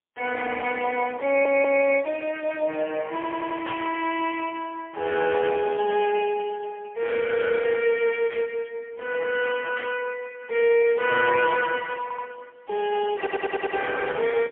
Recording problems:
phone line; 300 Hz to 3.2 kHz, AMR-NB, then MP3
audio stuttering; 4 times, first at 1.5 s
static burst; at 3.5 s, at 8.5 s and at 10 s; peak -6 dB vs average level

